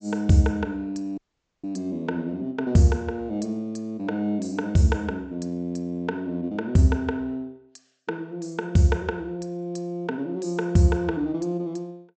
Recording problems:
low-pass filter; nothing above 8 kHz
audio cutting out; at 1 s

